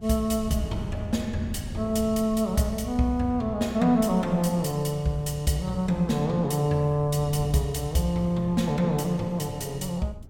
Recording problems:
wind on the microphone; below 140 Hz, SNR 15 dB

